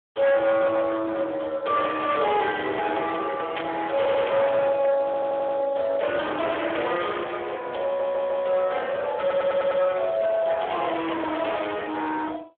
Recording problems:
telephone audio; 340 Hz to 3.6 kHz, Speex
distorted audio; hard clipping, signal-to-distortion ratio 8 dB
static burst; at 3.5 s; peak -4 dB vs average level
stutter; 4 times, first at 4 s

